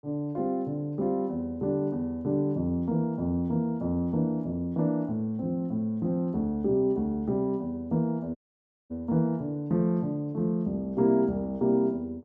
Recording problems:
audio cutting out; at 8.5 s for 0.5 s

